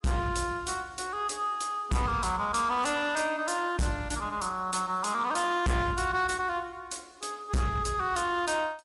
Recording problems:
codec artefacts; MP3, log-spectral distance 3 dB, nothing above 11 kHz
distortion; hard clipping, signal-to-distortion ratio 8 dB

